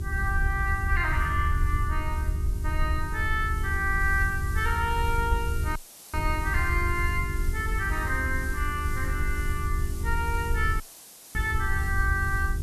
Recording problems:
hum; 50 Hz, harmonics up to 400 Hz, SNR 12 dB
background hiss; SNR 16 dB
rumble; below 76 Hz, SNR 1 dB
dropout; at 6 s and at 11 s for 0.5 s

